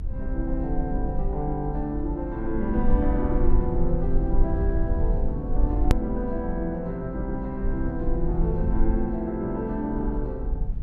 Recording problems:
rumble; below 52 Hz, strongest tone 18 Hz, SNR 1 dB
hard cut with a click; at 6 s

